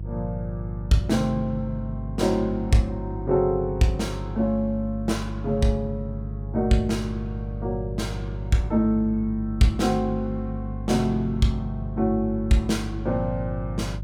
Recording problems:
hum; 50 Hz, harmonics up to 350 Hz, SNR 8 dB

